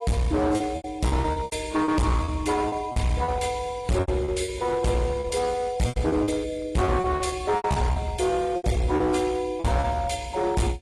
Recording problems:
lossy compression; AAC, log-spectral distance 3 dB
distortion; hard clipping, uneven, signal-to-distortion ratio 7 dB
lost packets; 13% of the sound replaced, filled with repeated pitch periods

